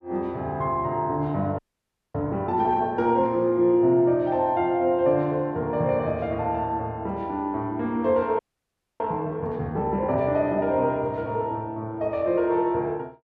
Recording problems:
audio freezing; at 1.5 s for 0.5 s and at 8.5 s for 0.5 s

